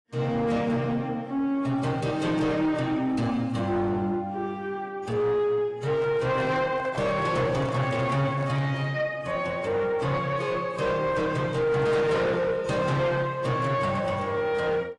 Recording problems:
codec artefacts; AAC, log-spectral distance 2 dB
distortion; soft clipping, signal-to-distortion ratio 10 dB
handling noise; from 6 to 9 s; peak -7 dB vs average level

